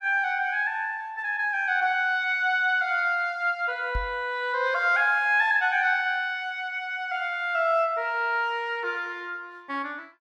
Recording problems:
knock on the microphone; at 4 s; peak -3 dB vs average level

